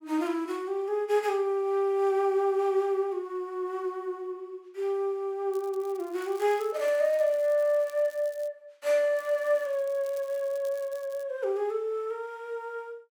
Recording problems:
crackle; from 5.5 to 8.5 s and from 9 to 11 s; loose cable, SNR 25 dB

